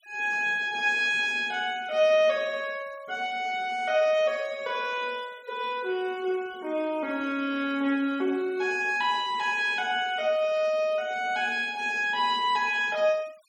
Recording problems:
noise reduction artefacts; signal-to-artefact ratio 25 dB

